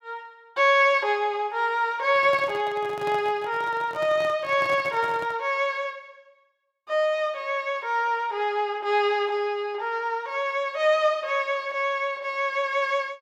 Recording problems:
microphone handling noise; from 2 to 5.5 s; peak -9 dB vs average level

